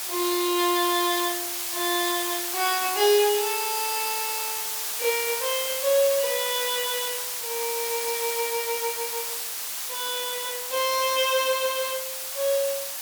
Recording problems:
hiss; SNR 2 dB

